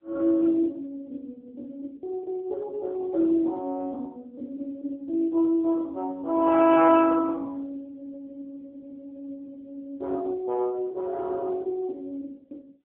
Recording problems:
phone line; 280 Hz to 2.5 kHz, AMR-NB

